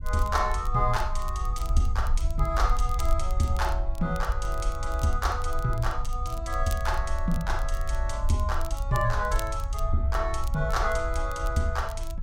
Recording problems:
rumble; below 58 Hz, SNR 2 dB
crackling; vinyl, SNR 19 dB

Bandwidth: 16 kHz